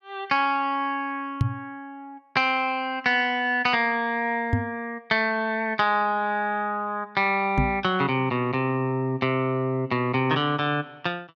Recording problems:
knock on the microphone; at 1.5 s, at 4.5 s and at 7.5 s; peak +5 dB vs average level

